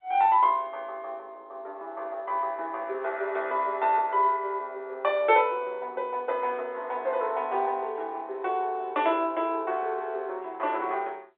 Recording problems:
telephone audio; 340 Hz to 3.6 kHz, G.711

